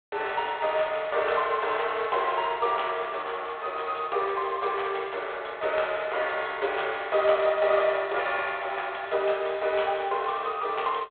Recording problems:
telephone audio; 340 Hz to 3.7 kHz, G.726

